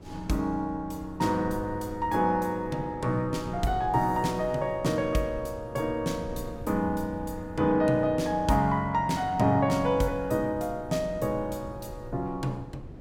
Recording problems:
wind noise; below 230 Hz, SNR 16 dB

